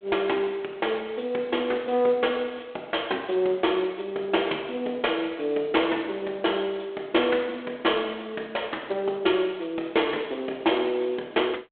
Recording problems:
telephone audio; 280 Hz to 3.4 kHz, G.726

